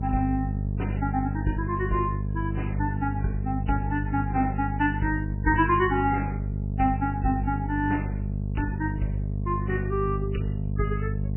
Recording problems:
lossy codec; MP3, log-spectral distance 2 dB, nothing above 3 kHz
hum; 50 Hz, harmonics up to 450 Hz, SNR 1 dB

